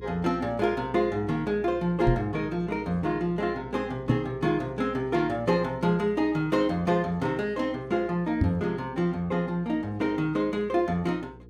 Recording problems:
hum; 60 Hz, harmonics up to 480 Hz, SNR 19 dB
knock on the microphone; at 2 s, at 4 s and at 8.5 s; peak +6 dB vs average level

